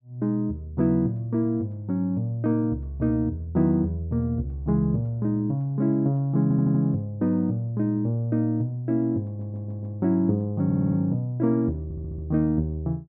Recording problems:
audio stuttering; 4 times, first at 6.5 s

